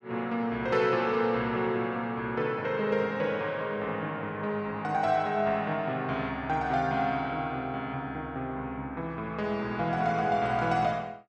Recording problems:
none

